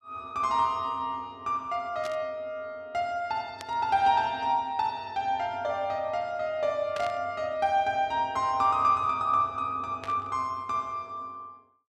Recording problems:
burst of static; 4 times, first at 2 s; peak -7 dB vs average level

